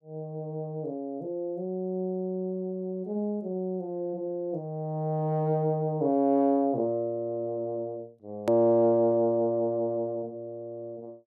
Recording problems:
edit click; at 8.5 s

